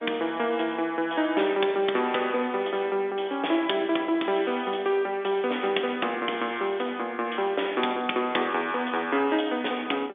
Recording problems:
phone line; 260 Hz to 3.6 kHz, G.711

